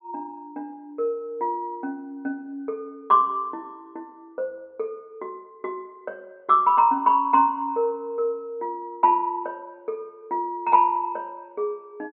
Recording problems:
treble missing; nothing above 4 kHz

